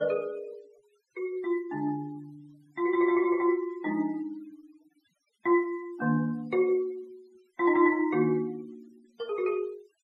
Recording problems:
denoising artefacts; signal-to-artefact ratio 27 dB

